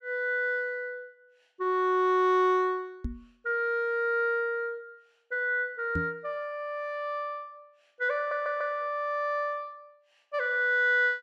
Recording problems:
microphone bump; at 3 s and at 6 s; peak 0 dB vs average level
stutter; at 8 s

